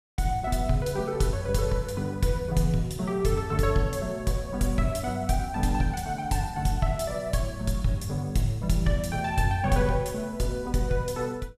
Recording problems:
none

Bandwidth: 14.5 kHz